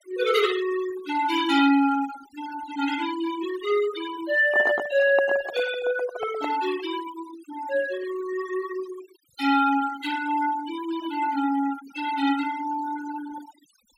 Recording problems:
noise reduction artefacts; signal-to-artefact ratio 13 dB
microphone handling noise; from 4.5 to 6.5 s; peak +1 dB vs average level

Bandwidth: 16 kHz